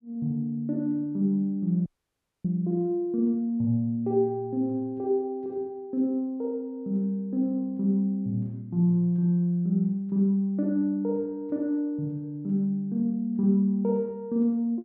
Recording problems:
dropout; at 2 s for 0.5 s

